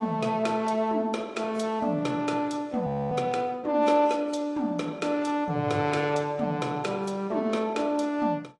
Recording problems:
codec artefacts; AAC, log-spectral distance 2 dB, nothing above 11 kHz
frozen audio; at 3 s

